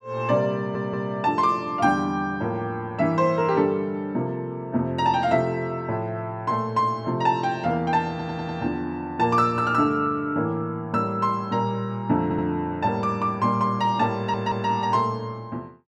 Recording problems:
stutter; 4 times, first at 0.5 s

